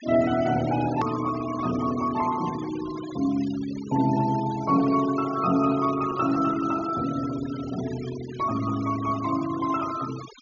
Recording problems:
low-pass filter; nothing above 6.9 kHz
noise reduction artefacts; signal-to-artefact ratio 15 dB
click at an edit; at 1 s

